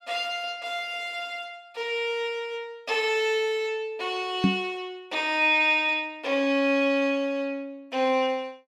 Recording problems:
microphone bump; at 4.5 s; peak +7 dB vs average level

